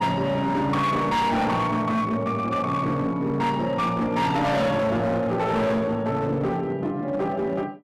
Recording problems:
distorted audio; hard clipping, uneven, signal-to-distortion ratio 8 dB

